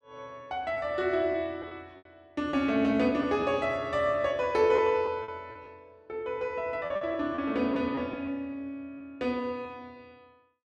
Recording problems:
lost packets; 6% of the sound replaced, filled with repeated pitch periods

